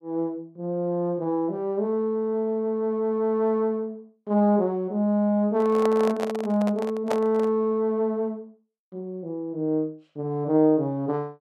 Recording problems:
microphone handling noise; from 5.5 to 7.5 s; peak +1 dB vs average level

